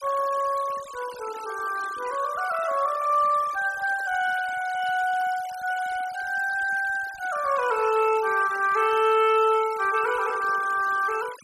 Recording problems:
denoising artefacts; signal-to-artefact ratio 18 dB

